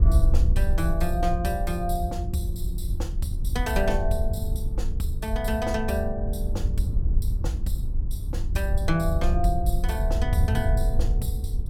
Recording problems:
wind noise; below 72 Hz, SNR -3 dB

